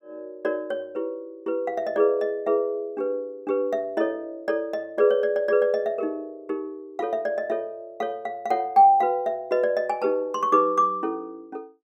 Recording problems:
none

